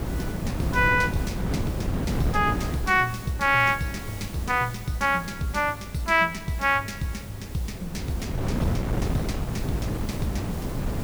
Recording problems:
background hiss; slope -1 dB per octave, SNR 18 dB
wind noise; below 310 Hz, SNR 5 dB

